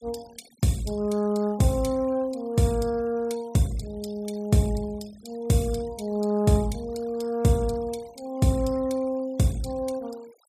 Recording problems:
noise reduction artefacts; signal-to-artefact ratio 23 dB

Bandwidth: 14.5 kHz